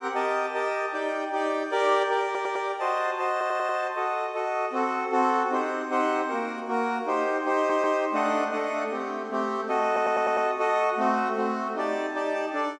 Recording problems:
stutter; 4 times, first at 2.5 s

